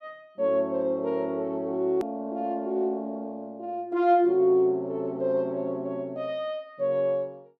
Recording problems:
edit click; at 2 s

